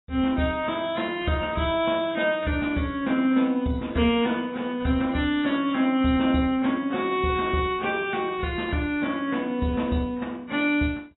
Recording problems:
lossy compression; AAC, log-spectral distance 4 dB, nothing above 3.4 kHz

